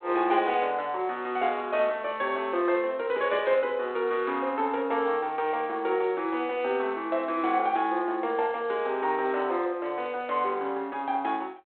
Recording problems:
phone line; 280 Hz to 3.8 kHz, G.726

